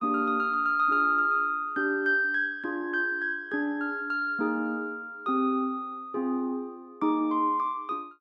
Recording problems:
none

